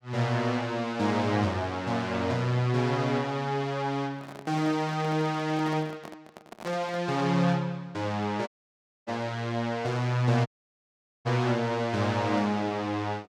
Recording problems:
handling noise; from 4 to 7 s; peak -9 dB vs average level
dropout; at 8.5 s for 0.5 s and at 10 s for 1 s

